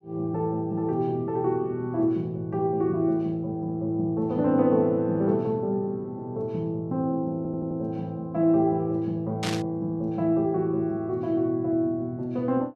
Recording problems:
stutter; at 7.5 s
static burst; at 9.5 s; peak -1 dB vs average level

